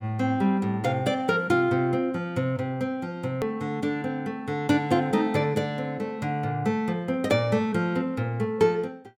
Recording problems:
hard cut with a click; at 3.5 s

